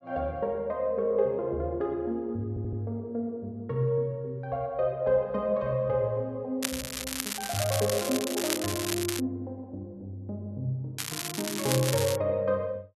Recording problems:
audio stuttering; at 2.5 s
crackling; from 6.5 to 9 s and from 11 to 12 s; loose cable, SNR 3 dB

